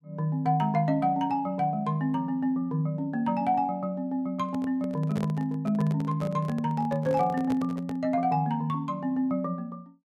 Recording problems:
microphone handling noise; from 4.5 to 8 s; peak -5 dB vs average level

